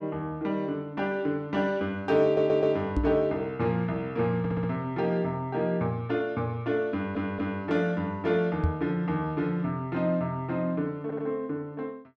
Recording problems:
stutter; 4 times, first at 2 s
microphone thump; at 3 s and at 8.5 s; peak +6 dB vs average level

